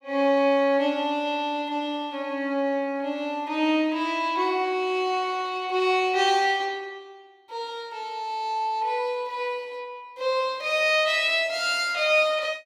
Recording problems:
none

